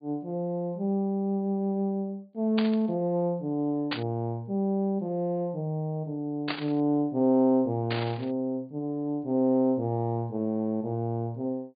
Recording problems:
treble cut off; nothing above 4.8 kHz
static burst; 4 times, first at 2.5 s; peak +1 dB vs average level

